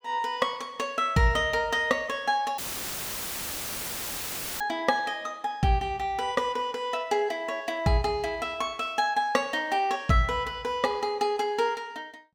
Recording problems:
dropout; at 2.5 s for 2 s; filled with static

